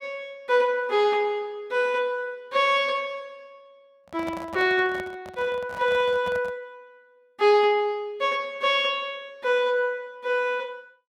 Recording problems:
handling noise; from 4 to 6.5 s; peak -9 dB vs average level

